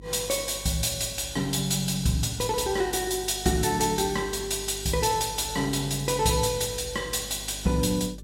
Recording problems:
electrical hum; 50 Hz, harmonics up to 450 Hz, SNR 18 dB

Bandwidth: 16 kHz